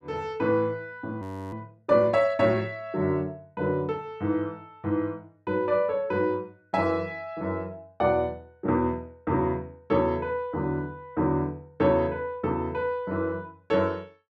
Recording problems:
audio freezing; at 1 s

